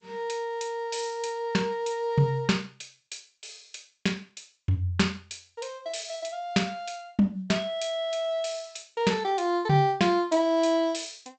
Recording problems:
lossy compression; G.722, log-spectral distance 5 dB, nothing above 7.8 kHz

